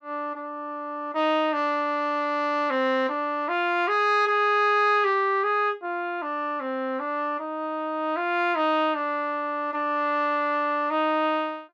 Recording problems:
none

